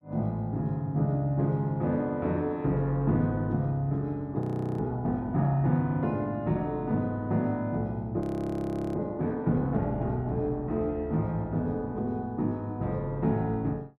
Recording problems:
audio freezing; at 4.5 s and at 8 s for 1 s

